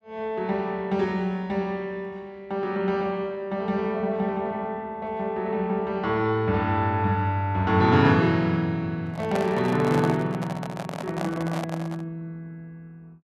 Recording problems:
microphone handling noise; from 9 to 12 s; peak -1 dB vs average level

